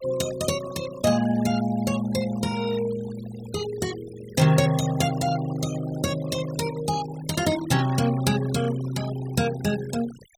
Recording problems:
noise reduction artefacts; signal-to-artefact ratio 16 dB

